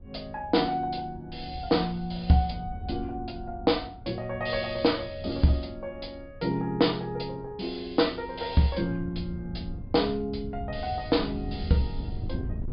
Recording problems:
treble cut off; nothing above 5.1 kHz
wind on the microphone; below 110 Hz, SNR 12 dB

